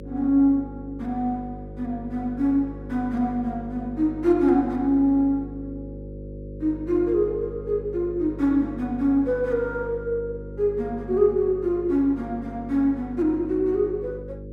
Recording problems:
hum; 50 Hz, harmonics up to 550 Hz, SNR 14 dB

